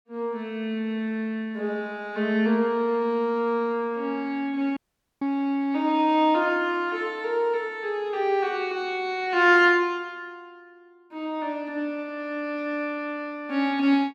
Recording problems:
audio cutting out; at 5 s

